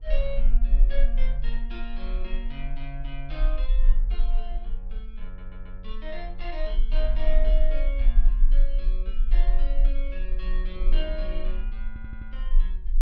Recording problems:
low-frequency rumble; below 34 Hz, strongest tone 22 Hz, SNR -11 dB
wind noise; below 310 Hz, SNR 17 dB
stutter; at 5.5 s and at 12 s

